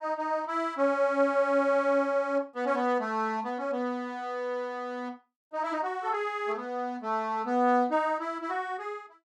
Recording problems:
none

